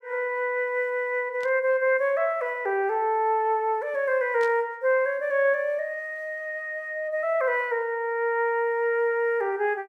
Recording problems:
static burst; at 1.5 s and at 4.5 s; peak -13 dB vs average level

